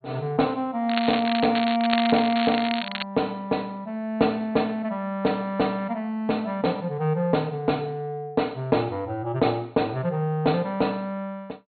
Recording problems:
low-pass filter; nothing above 4.4 kHz
crackle; from 1 to 3 s; loose cable, SNR 5 dB

